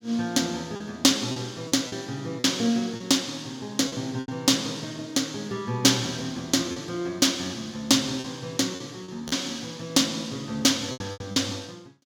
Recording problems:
lost packets; 6% of the sound replaced, filled with repeated pitch periods

